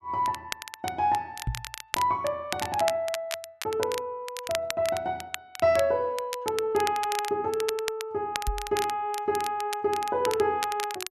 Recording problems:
crackle; vinyl, SNR 9 dB
microphone thump; at 1.5 s and at 8.5 s; peak +2 dB vs average level

